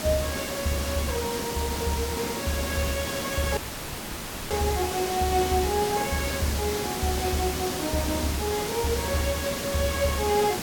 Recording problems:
hiss; slope -3 dB per octave, SNR 3 dB
audio cutting out; at 3.5 s for 1 s

